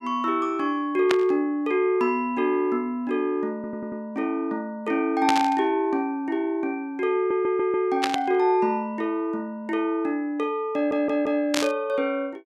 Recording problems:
static burst; 4 times, first at 1 s; peak +4 dB vs average level
audio stuttering; at 3.5 s, at 7 s and at 11 s

